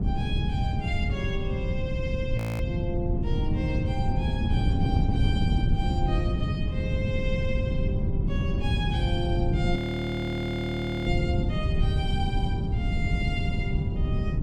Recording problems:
wind on the microphone; below 160 Hz, SNR -6 dB
audio freezing; at 2.5 s and at 10 s for 1.5 s

